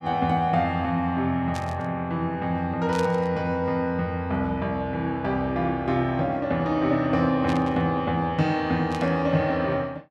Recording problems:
static burst; 4 times, first at 1.5 s; peak -7 dB vs average level

